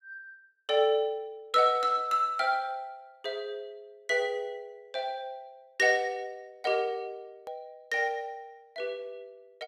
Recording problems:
edit click; at 7.5 s

